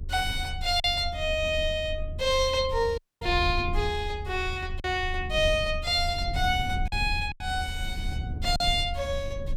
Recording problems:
rumble; below 78 Hz, strongest tone 26 Hz, SNR 8 dB
lost packets; 3% of the sound replaced, filled with silence
dropout; at 3 s

